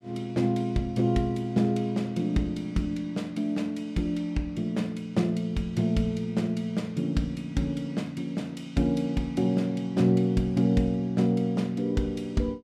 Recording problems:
none

